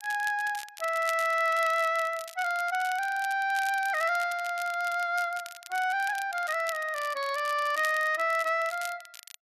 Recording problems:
crackle; vinyl, SNR 16 dB

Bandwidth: 13.5 kHz